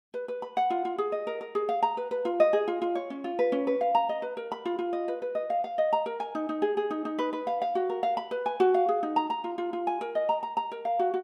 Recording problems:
none

